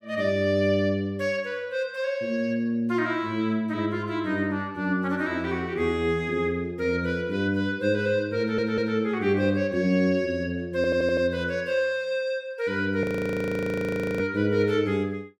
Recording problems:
audio stuttering; at 8.5 s and at 11 s
audio freezing; at 13 s for 1 s

